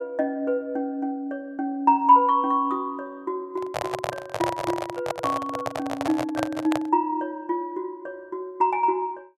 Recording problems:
microphone handling noise; from 3.5 to 7 s; peak +2 dB vs average level

